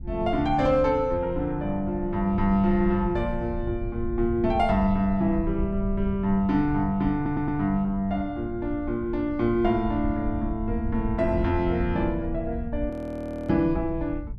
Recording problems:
rumble; below 90 Hz, SNR 10 dB
audio stuttering; at 7 s
audio freezing; at 13 s for 0.5 s

